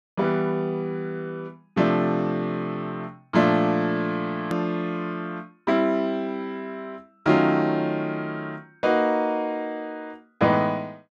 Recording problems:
hard cut with a click; at 4.5 s

